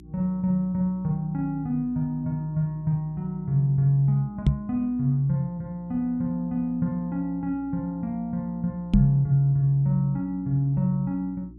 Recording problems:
hum; 60 Hz, harmonics up to 360 Hz, SNR 21 dB
microphone thump; at 4.5 s and at 9 s; peak +9 dB vs average level

